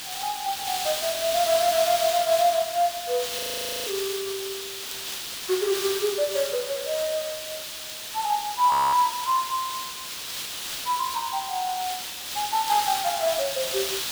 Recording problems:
background hiss; SNR 4 dB
crackling; vinyl, SNR 26 dB
audio freezing; at 3.5 s and at 8.5 s

